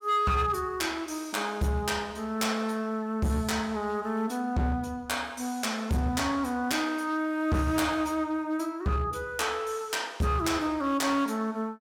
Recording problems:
distortion; hard clipping, signal-to-distortion ratio 11 dB

